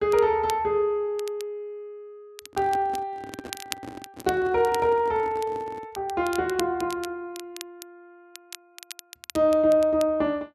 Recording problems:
crackling; vinyl, SNR 17 dB
handling noise; from 2.5 to 6 s; peak -8 dB vs average level

